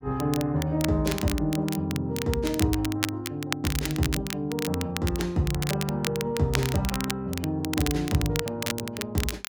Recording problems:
crackling; vinyl, SNR 6 dB

